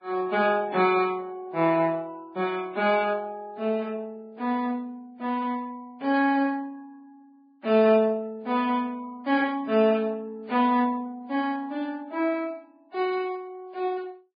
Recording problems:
codec artefacts; MP3, then Vorbis, log-spectral distance 2 dB, nothing above 4.6 kHz

